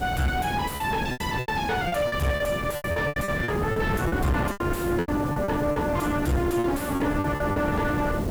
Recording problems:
distortion; soft clipping, signal-to-distortion ratio 7 dB
hiss; slope -3 dB per octave, SNR 18 dB
wind on the microphone; below 430 Hz, SNR 3 dB
lost packets; 14% of the sound replaced, filled with repeated pitch periods

